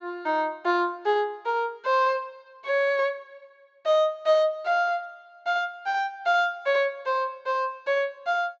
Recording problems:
treble missing; nothing above 7.6 kHz

